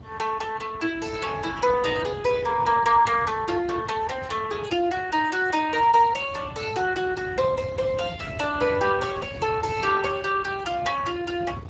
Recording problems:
codec artefacts; Speex, log-spectral distance 4 dB, nothing above 7.3 kHz
wind noise; below 320 Hz, SNR 16 dB

